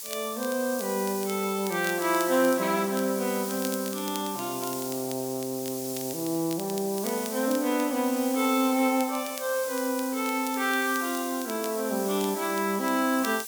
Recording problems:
hiss; SNR 8 dB
crackling; vinyl, SNR 16 dB

